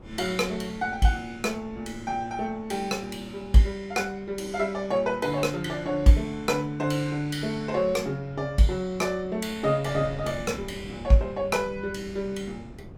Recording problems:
wind noise; below 290 Hz, SNR 19 dB

